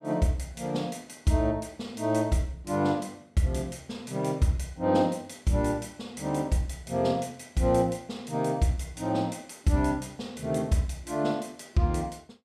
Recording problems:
none

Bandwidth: 15 kHz